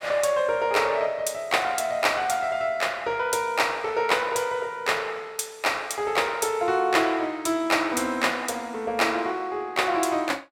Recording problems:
none

